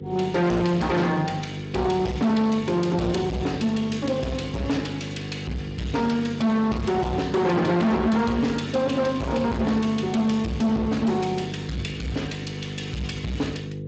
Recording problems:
codec artefacts; Speex, log-spectral distance 5 dB, nothing above 7.8 kHz
distortion; hard clipping, signal-to-distortion ratio 7 dB
hum; 50 Hz, harmonics up to 500 Hz, SNR 9 dB

